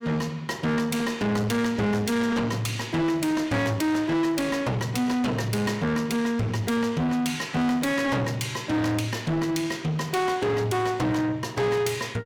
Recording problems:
distortion; soft clipping, signal-to-distortion ratio 8 dB

